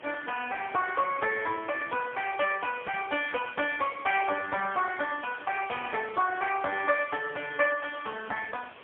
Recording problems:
telephone audio; 300 Hz to 3.1 kHz, AMR-NB, then MP3
hiss; SNR 19 dB

